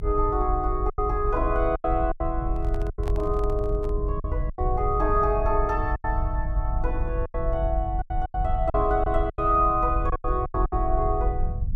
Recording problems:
rumble; below 60 Hz, SNR 3 dB
lost packets; 10% of the sound replaced, filled with silence
microphone handling noise; from 2.5 to 4 s; peak -8 dB vs average level

